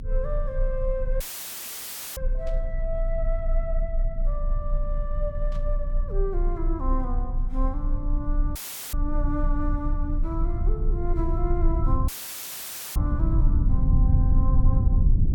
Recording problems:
rumble; below 64 Hz, strongest tone 30 Hz, SNR -7 dB
audio cutting out; at 1 s for 1 s, at 8.5 s and at 12 s for 1 s; filled with static
static burst; at 2.5 s and at 5.5 s; peak -11 dB vs average level

